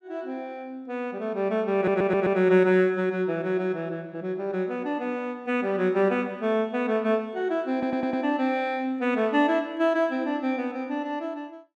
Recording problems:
stutter; at 2 s and at 7.5 s

